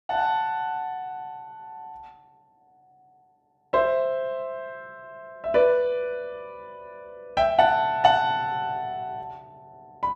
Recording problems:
none

